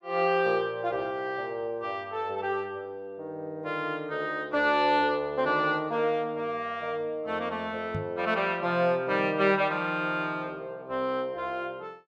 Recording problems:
knock on the microphone; at 8 s; peak -2 dB vs average level

